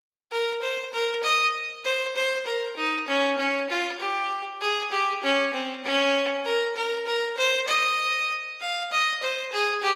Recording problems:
lossy compression; Opus, log-spectral distance 3 dB

